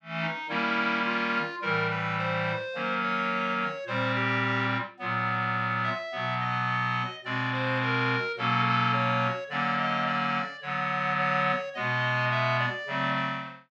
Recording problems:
none

